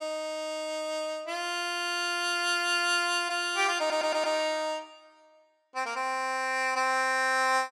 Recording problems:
stutter; at 4 s

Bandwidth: 16 kHz